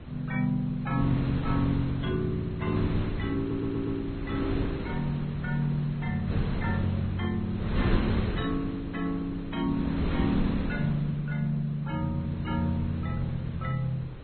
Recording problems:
lossy compression; MP2, then Vorbis, log-spectral distance 2 dB, nothing above 3.5 kHz
wind on the microphone; below 320 Hz, SNR 5 dB
audio stuttering; at 3.5 s

